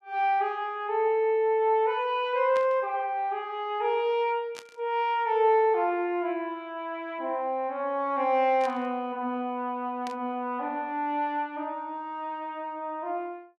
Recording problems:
burst of static; 4 times, first at 2.5 s; peak -10 dB vs average level

